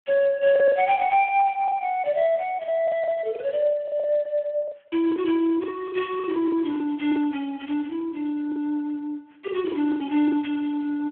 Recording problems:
phone line; 240 Hz to 3.3 kHz, Speex
packet loss; 9% of the sound replaced, filled with the last packet

